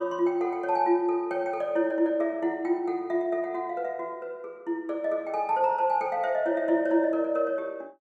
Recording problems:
none

